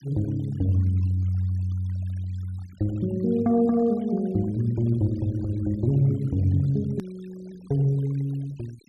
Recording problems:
noise reduction artefacts; signal-to-artefact ratio 27 dB
click at an edit; at 7 s

